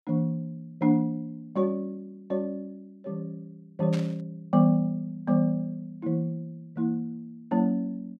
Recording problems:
burst of static; at 4 s; peak -7 dB vs average level

